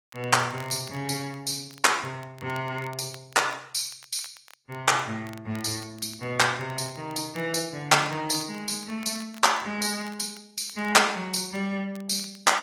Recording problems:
codec artefacts; AAC, log-spectral distance 4 dB
crackle; vinyl, SNR 25 dB

